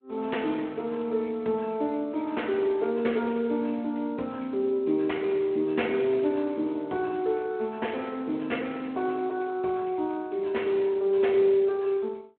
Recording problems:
telephone audio; 260 Hz to 3.4 kHz, Speex

